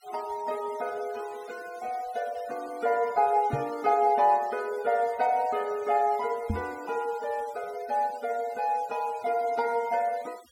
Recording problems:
noise reduction artefacts; signal-to-artefact ratio 22 dB
microphone bump; at 3.5 s and at 6.5 s; peak +2 dB vs average level

